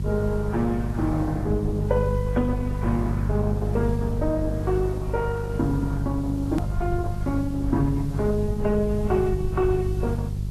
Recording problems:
lossy codec; Opus, then AAC, log-spectral distance 2 dB, nothing above 10.7 kHz
hum; 50 Hz, harmonics up to 400 Hz, SNR 2 dB
background hiss; slope +2 dB per octave, SNR 25 dB
low-frequency rumble; below 94 Hz, SNR 10 dB
hard cut with a click; at 6.5 s

